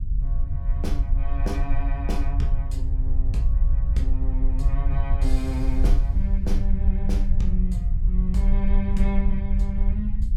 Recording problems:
rumble; below 56 Hz, SNR -6 dB

